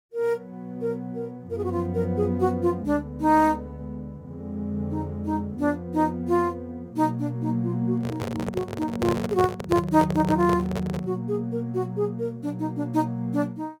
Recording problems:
microphone handling noise; from 8 to 11 s; peak +2 dB vs average level

